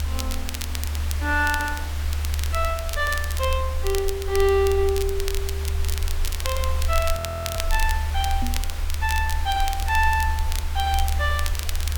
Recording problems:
background hiss; slope -2 dB per octave, SNR 11 dB
rumble; below 74 Hz, SNR 2 dB
crackling; vinyl, SNR 9 dB
audio freezing; at 7 s
microphone bump; at 8.5 s; peak +3 dB vs average level

